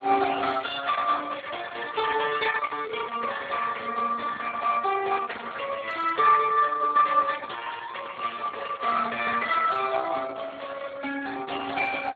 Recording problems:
codec artefacts; Opus, then Speex, log-spectral distance 5 dB

